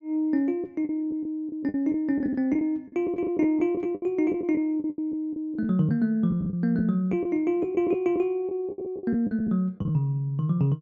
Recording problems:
packet loss; 11% of the sound replaced, filled with the last packet

